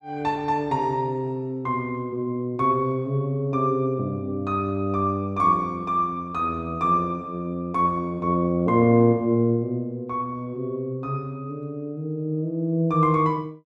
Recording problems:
none

